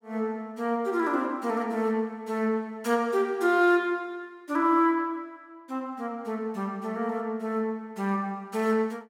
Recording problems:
none

